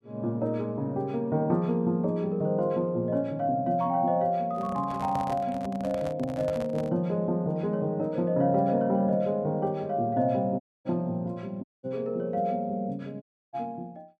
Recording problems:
handling noise; from 4.5 to 7 s; peak -5 dB vs average level
dropout; at 11 s, at 12 s and at 13 s

